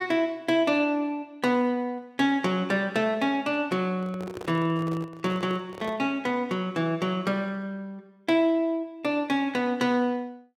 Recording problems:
microphone handling noise; from 4 to 6 s; peak -8 dB vs average level

